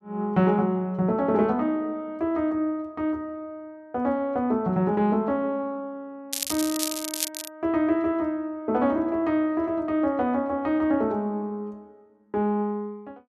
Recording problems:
crackle; from 6.5 to 7.5 s; loose cable, SNR 4 dB

